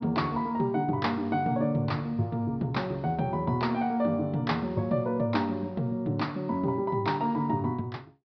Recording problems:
treble missing; nothing above 5.5 kHz

